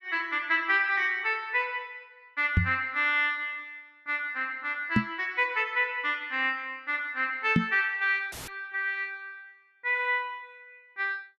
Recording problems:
microphone bump; at 2.5 s, at 5 s and at 7.5 s; peak +7 dB vs average level
audio cutting out; at 8.5 s; filled with static

